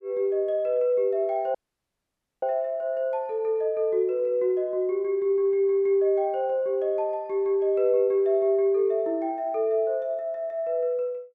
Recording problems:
audio cutting out; at 1.5 s for 1 s

